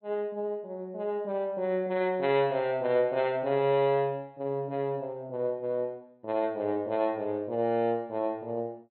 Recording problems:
low-pass filter; nothing above 4.2 kHz

